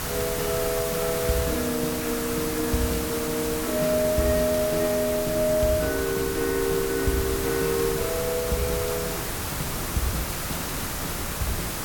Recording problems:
background hiss; slope -3 dB per octave, SNR 3 dB
wind on the microphone; below 160 Hz, SNR 13 dB

